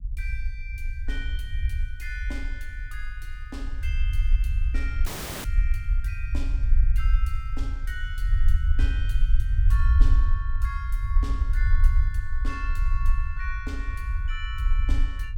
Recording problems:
rumble; below 56 Hz, SNR -12 dB
audio cutting out; at 5 s

